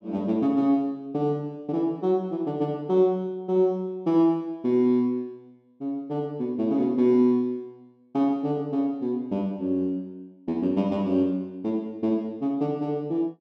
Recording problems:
none

